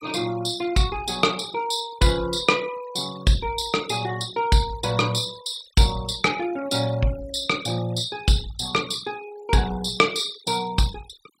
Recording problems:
noise reduction artefacts; signal-to-artefact ratio 17 dB

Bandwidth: 16 kHz